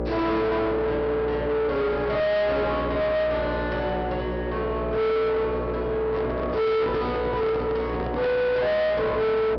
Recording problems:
treble cut off; nothing above 5.5 kHz
distorted audio; soft clipping, signal-to-distortion ratio 5 dB
mains hum; 60 Hz, harmonics up to 1.3 kHz, SNR 6 dB
microphone handling noise; from 6 to 8.5 s; peak +1 dB vs average level

